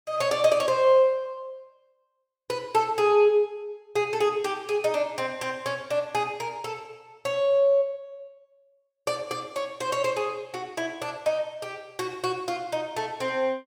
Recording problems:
none

